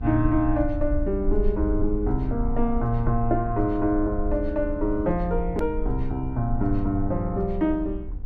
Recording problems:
hum; 60 Hz, harmonics up to 1 kHz, SNR 21 dB
low-frequency rumble; below 54 Hz, strongest tone 22 Hz, SNR 6 dB
click at an edit; at 5.5 s

